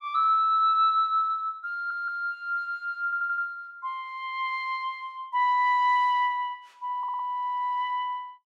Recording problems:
audio stuttering; at 1.5 s, at 3 s and at 7 s

